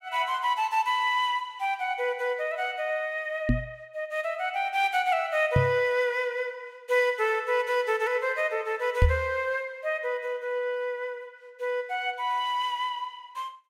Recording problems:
microphone bump; at 3.5 s, at 5.5 s and at 9 s; peak +8 dB vs average level

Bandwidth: 16 kHz